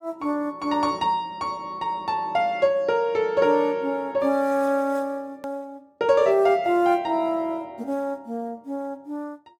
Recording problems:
click at an edit; at 5.5 s

